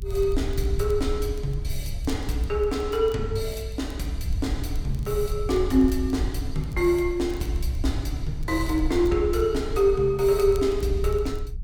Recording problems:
low-frequency rumble; below 74 Hz, SNR 7 dB
crackle; vinyl, SNR 28 dB

